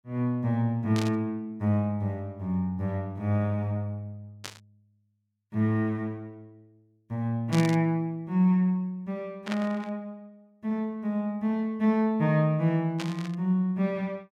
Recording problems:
static burst; 5 times, first at 1 s; peak -3 dB vs average level

